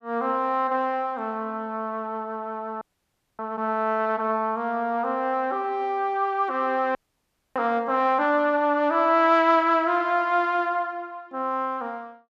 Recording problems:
frozen audio; at 3 s for 0.5 s and at 7 s for 0.5 s

